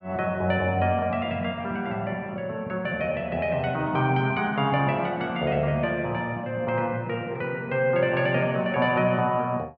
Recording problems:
none

